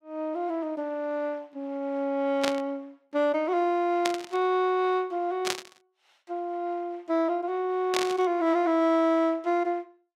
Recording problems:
static burst; 4 times, first at 2.5 s; peak +3 dB vs average level

